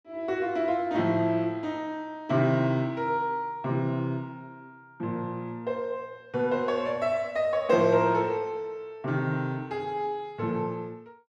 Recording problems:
none

